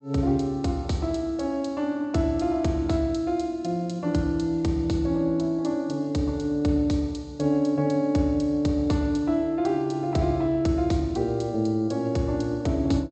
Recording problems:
treble cut off; nothing above 8 kHz

